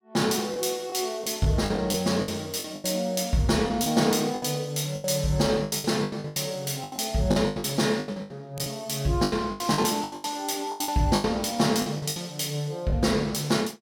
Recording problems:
packet loss; 15% of the sound replaced, filled with the last packet

